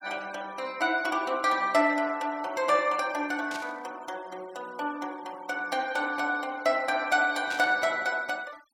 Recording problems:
noise reduction artefacts; signal-to-artefact ratio 23 dB
burst of static; at 3.5 s and at 7.5 s; peak -7 dB vs average level

